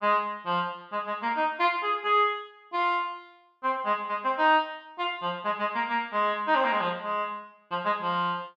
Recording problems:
none

